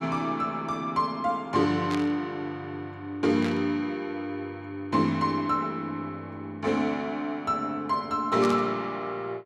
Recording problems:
static burst; at 2 s, at 3.5 s and at 8.5 s; peak -4 dB vs average level

